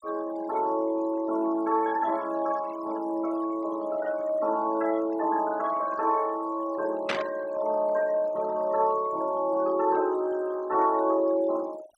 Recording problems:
noise reduction artefacts; signal-to-artefact ratio 20 dB
burst of static; at 7 s; peak +2 dB vs average level

